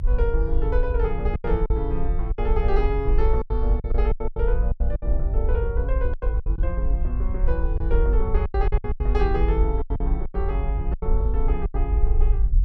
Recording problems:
rumble; below 52 Hz, SNR -5 dB
lost packets; 11% of the sound replaced, filled with silence

